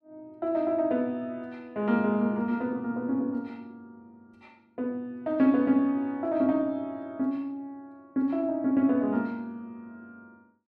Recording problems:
none

